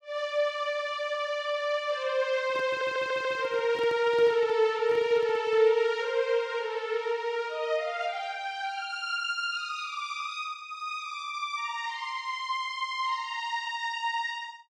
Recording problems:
microphone handling noise; from 2.5 to 5.5 s; peak -10 dB vs average level
audio stuttering; at 2.5 s

